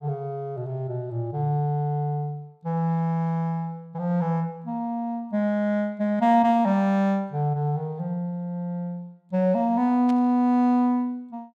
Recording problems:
burst of static; at 10 s; peak -15 dB vs average level

